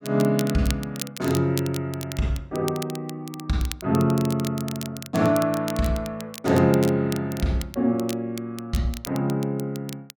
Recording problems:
crackle; vinyl, SNR 14 dB

